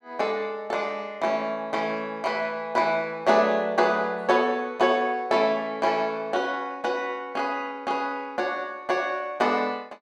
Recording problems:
none

